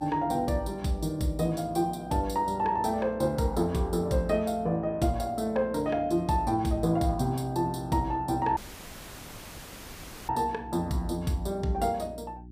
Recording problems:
electrical hum; 60 Hz, harmonics up to 360 Hz, SNR 20 dB
dropout; at 8.5 s for 1.5 s

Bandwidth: 15 kHz